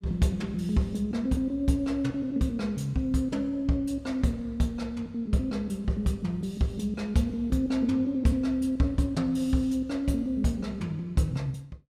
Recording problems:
none

